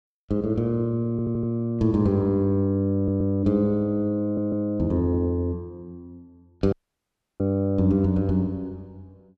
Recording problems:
audio stuttering; at 1 s, at 3 s and at 4 s
audio cutting out; at 6.5 s for 0.5 s

